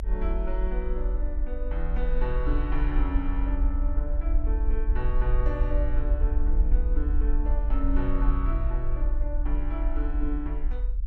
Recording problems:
rumble; below 46 Hz, strongest tone 22 Hz, SNR -7 dB

